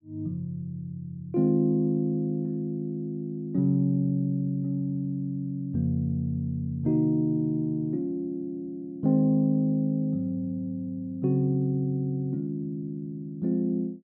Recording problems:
none

